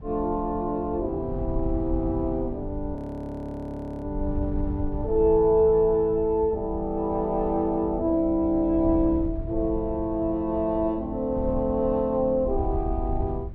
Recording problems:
wind on the microphone; below 90 Hz, SNR 10 dB
frozen audio; at 3 s for 1 s

